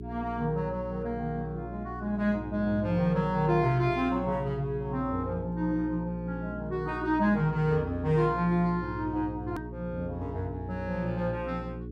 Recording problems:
hum; 60 Hz, harmonics up to 420 Hz, SNR 10 dB
edit click; at 9.5 s

